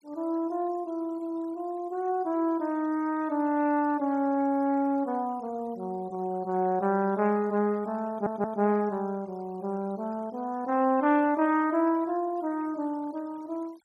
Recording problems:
denoising artefacts; signal-to-artefact ratio 27 dB
audio stuttering; at 8 s

